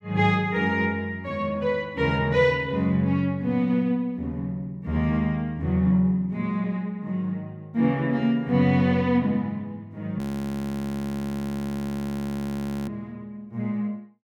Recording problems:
frozen audio; at 10 s for 2.5 s

